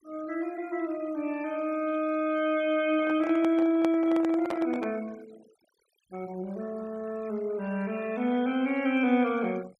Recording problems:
noise reduction artefacts; signal-to-artefact ratio 23 dB
microphone handling noise; from 3 to 5 s; peak -3 dB vs average level

